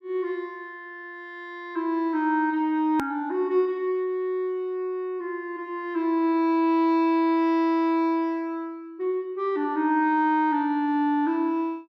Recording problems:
click at an edit; at 3 s

